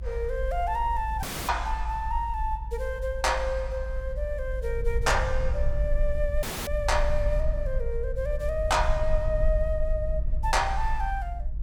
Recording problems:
low-frequency rumble; below 56 Hz, SNR 2 dB
dropout; at 1 s and at 6.5 s

